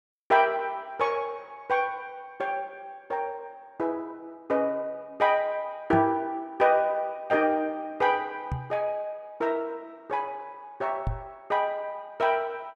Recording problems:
microphone bump; at 6 s, at 8.5 s and at 11 s; peak +1 dB vs average level

